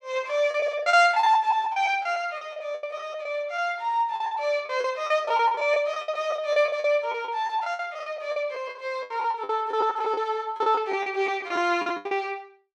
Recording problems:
packet loss; 16% of the sound replaced, filled with the last packet

